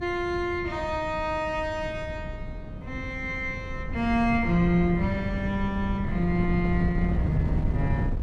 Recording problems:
wind on the microphone; below 160 Hz, SNR 5 dB

